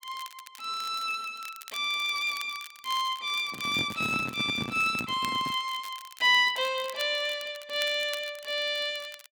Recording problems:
crackle; vinyl, SNR 18 dB
handling noise; from 3.5 to 5.5 s; peak -2 dB vs average level

